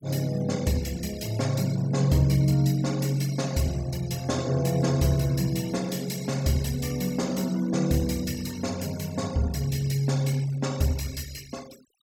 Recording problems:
noise reduction artefacts; signal-to-artefact ratio 18 dB

